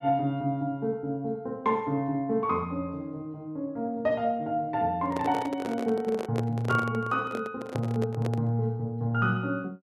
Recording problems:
microphone handling noise; from 5 to 8.5 s; peak 0 dB vs average level

